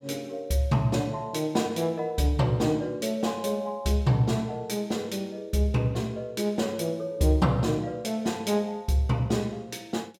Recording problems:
none

